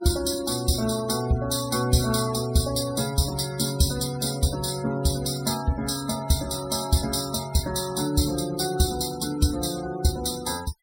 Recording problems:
denoising artefacts; signal-to-artefact ratio 14 dB

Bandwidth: 16.5 kHz